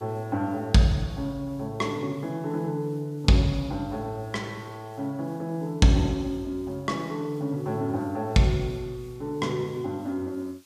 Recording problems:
hiss; slope +2 dB per octave, SNR 30 dB

